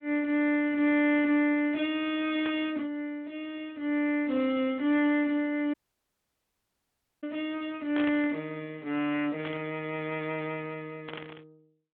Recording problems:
phone line; 190 Hz to 3.7 kHz, Speex
distortion; soft clipping, signal-to-distortion ratio 12 dB
burst of static; 4 times, first at 2.5 s; peak -4 dB vs average level
audio cutting out; at 5.5 s for 1.5 s

